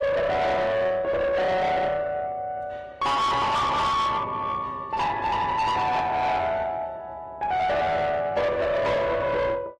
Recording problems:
lossy compression; AAC, log-spectral distance 2 dB, nothing above 13.1 kHz
distorted audio; soft clipping, signal-to-distortion ratio 6 dB

